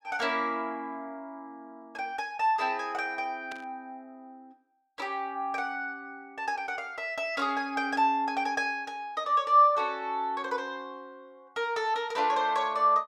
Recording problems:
static burst; at 3.5 s; peak -11 dB vs average level

